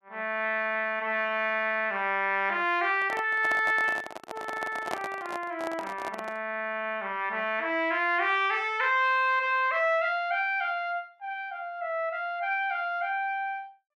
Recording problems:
microphone handling noise; from 3 to 6.5 s; peak -1 dB vs average level

